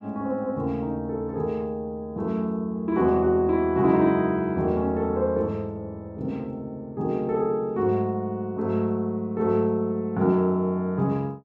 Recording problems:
none

